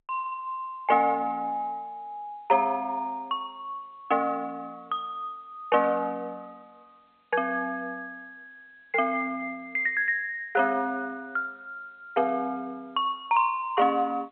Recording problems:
telephone audio; 340 Hz to 3.2 kHz, G.711

